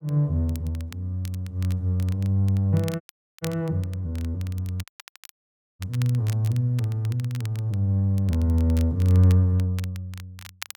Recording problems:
crackle; vinyl, SNR 21 dB
dropout; at 3 s and at 5 s for 1 s

